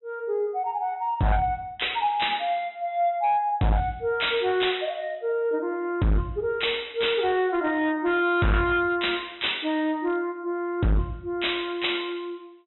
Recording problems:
low-pass filter; nothing above 3.9 kHz
distortion; hard clipping, signal-to-distortion ratio 7 dB

